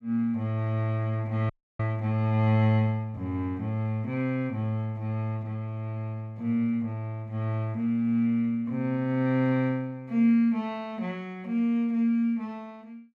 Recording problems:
audio freezing; at 1.5 s

